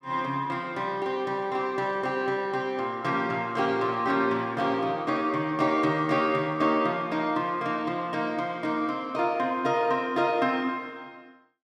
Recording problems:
none

